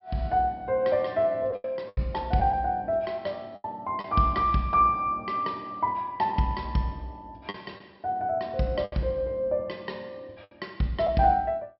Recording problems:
treble cut off; nothing above 5.5 kHz
packet loss; 4% of the sound replaced, filled with the last packet

